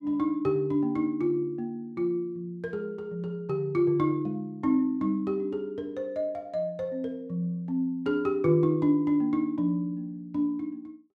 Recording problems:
none

